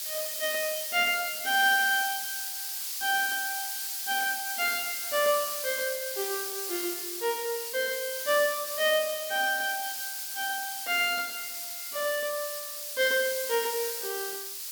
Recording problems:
background hiss; slope +5 dB per octave, SNR 3 dB

